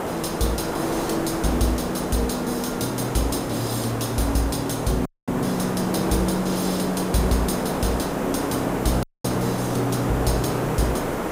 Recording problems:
background hiss; SNR 2 dB
audio cutting out; at 5 s and at 9 s

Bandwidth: 15.5 kHz